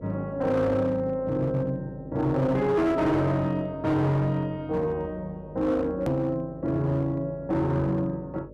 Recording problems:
distorted audio; hard clipping, uneven, signal-to-distortion ratio 11 dB
electrical hum; 50 Hz, harmonics up to 600 Hz, SNR 19 dB
edit click; at 6 s

